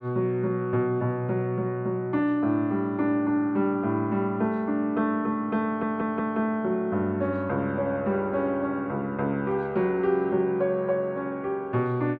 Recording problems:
stutter; at 5.5 s

